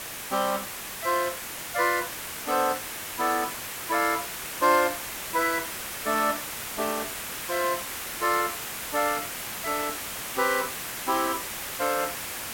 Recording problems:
hiss; slope -1 dB per octave, SNR 5 dB

